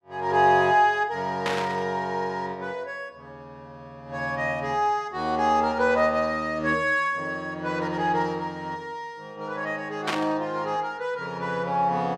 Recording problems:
static burst; at 1.5 s and at 10 s; peak +2 dB vs average level

